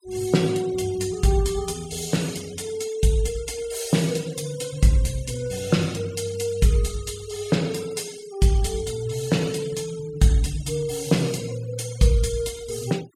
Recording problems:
noise reduction artefacts; signal-to-artefact ratio 19 dB

